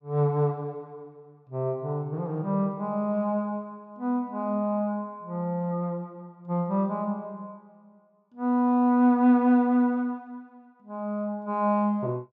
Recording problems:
none

